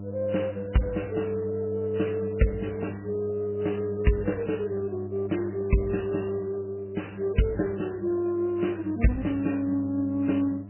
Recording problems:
lossy codec; MP2, then MP3, log-spectral distance 4 dB, nothing above 3 kHz
hum; 50 Hz, harmonics up to 700 Hz, SNR 10 dB

